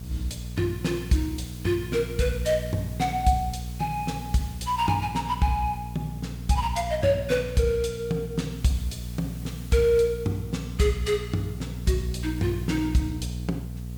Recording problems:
hum; 60 Hz, harmonics up to 480 Hz, SNR 9 dB
background hiss; slope 0 dB per octave, SNR 21 dB

